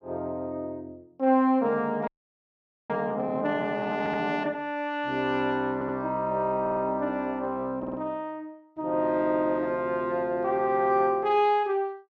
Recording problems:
frozen audio; at 2 s for 1 s
audio stuttering; 4 times, first at 4 s

